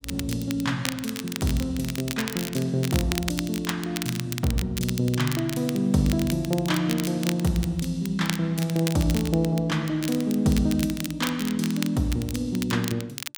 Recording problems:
crackle; vinyl, SNR 9 dB

